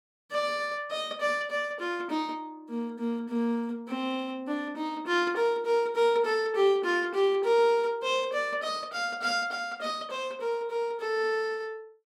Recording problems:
none

